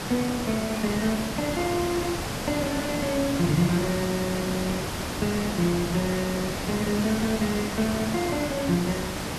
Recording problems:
hiss; slope -4 dB per octave, SNR 3 dB

